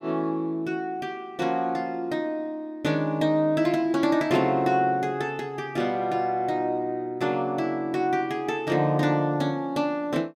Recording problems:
none

